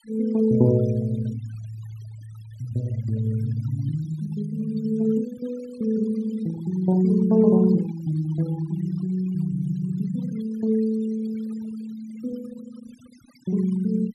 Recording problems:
denoising artefacts; signal-to-artefact ratio 22 dB

